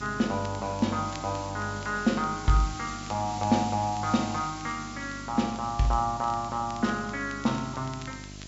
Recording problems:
low-pass filter; nothing above 8 kHz
electrical hum; 50 Hz, harmonics up to 1 kHz, SNR 15 dB
background hiss; slope +2 dB per octave, SNR 14 dB
crackle; vinyl, SNR 23 dB

